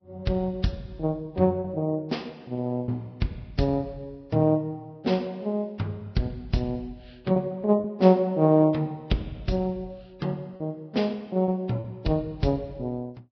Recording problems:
lossy codec; Vorbis, log-spectral distance 2 dB, nothing above 5.3 kHz
packet loss; 2% of the sound replaced, filled with repeated pitch periods

